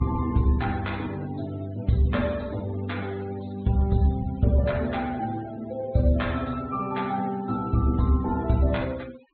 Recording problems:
treble cut off; nothing above 4.1 kHz
denoising artefacts; signal-to-artefact ratio 21 dB

